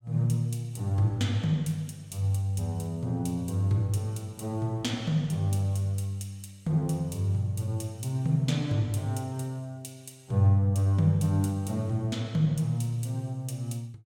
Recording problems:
none

